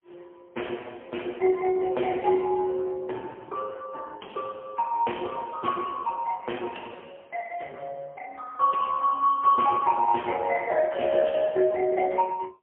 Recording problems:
telephone audio; 280 Hz to 3 kHz, AMR-NB, then MP3

